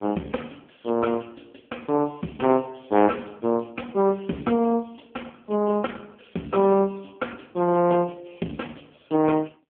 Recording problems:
phone line; 130 Hz to 2.5 kHz, AMR-NB

